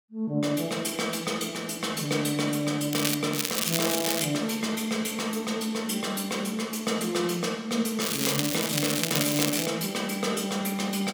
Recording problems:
crackle; at 3 s, at 3.5 s and from 8 to 9.5 s; loose cable, SNR 1 dB

